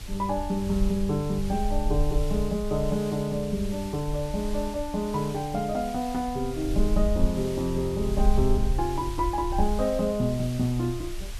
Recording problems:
background hiss; slope -1 dB per octave, SNR 15 dB
low-frequency rumble; below 50 Hz, SNR 6 dB

